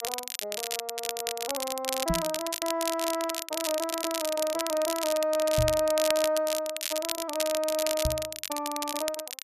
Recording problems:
crackling; vinyl, SNR 3 dB
microphone bump; at 2 s, at 5.5 s and at 8 s; peak +4 dB vs average level

